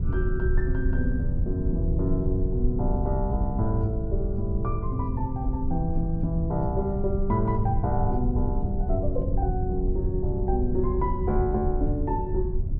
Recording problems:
rumble; below 90 Hz, SNR 0 dB

